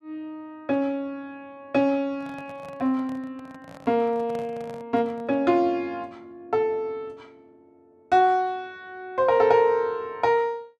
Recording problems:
handling noise; from 2 to 5.5 s; peak -12 dB vs average level

